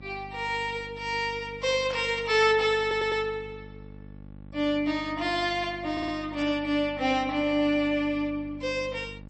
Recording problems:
codec artefacts; MP3, log-spectral distance 2 dB, nothing above 8 kHz
hum; 50 Hz, harmonics up to 900 Hz, SNR 18 dB
burst of static; at 2 s and at 6.5 s; peak -10 dB vs average level
audio stuttering; at 3 s and at 6 s

